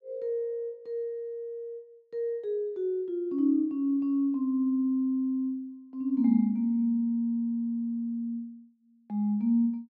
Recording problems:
none

